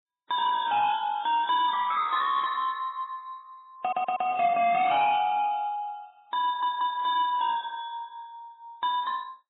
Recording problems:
lossy codec; MP3, then AAC, log-spectral distance 2 dB, nothing above 3.7 kHz
distorted audio; soft clipping, signal-to-distortion ratio 10 dB
audio stuttering; at 4 s and at 6.5 s

